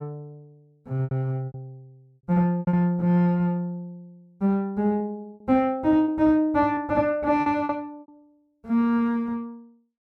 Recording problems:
lost packets; 7% of the sound replaced, filled with repeated pitch periods

